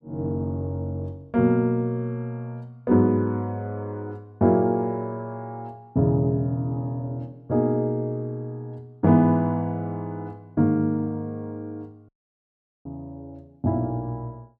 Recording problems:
dropout; at 12 s for 1 s

